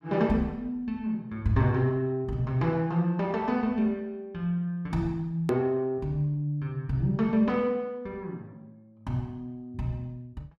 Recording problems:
edit click; at 5.5 s

